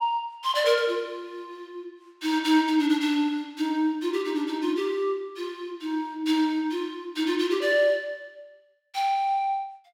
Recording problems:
none

